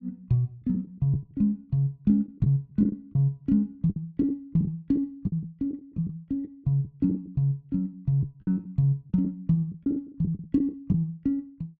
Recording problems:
lost packets; 9% of the sound replaced, filled with the last packet

